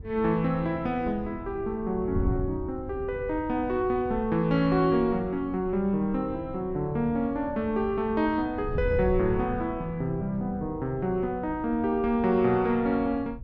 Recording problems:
wind on the microphone; below 120 Hz, SNR 12 dB

